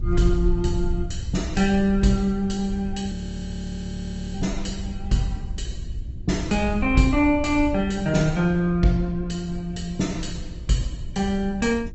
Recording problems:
low-pass filter; nothing above 7.8 kHz
lossy compression; Opus, log-spectral distance 3 dB
hum; 60 Hz, harmonics up to 360 Hz, SNR 21 dB
wind on the microphone; below 76 Hz, SNR 9 dB
audio freezing; at 3 s for 1 s

